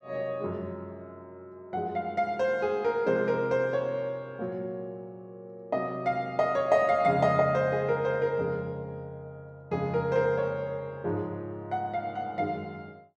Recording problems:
none

